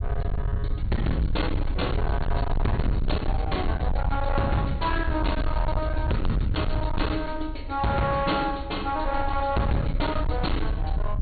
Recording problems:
treble cut off; nothing above 4.4 kHz
distortion; hard clipping, uneven, signal-to-distortion ratio 6 dB
low-frequency rumble; below 90 Hz, SNR 2 dB

